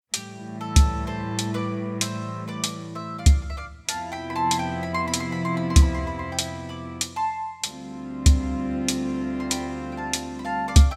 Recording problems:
none

